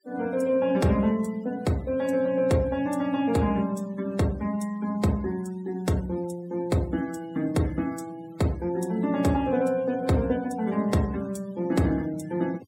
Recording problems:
denoising artefacts; signal-to-artefact ratio 22 dB

